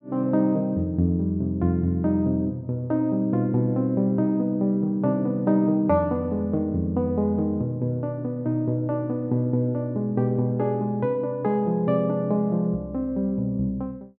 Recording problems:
none

